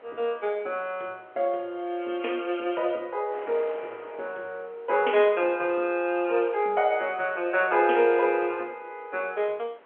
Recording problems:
phone line; 300 Hz to 3.3 kHz, G.711
wind on the microphone; below 1.5 kHz, SNR 24 dB

